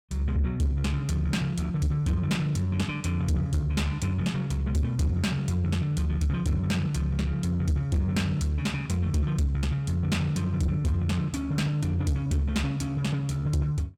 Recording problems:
distorted audio; soft clipping, signal-to-distortion ratio 10 dB

